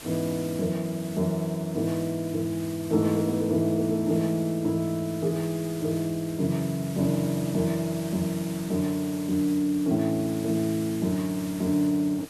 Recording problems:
hiss; slope -1 dB per octave, SNR 16 dB

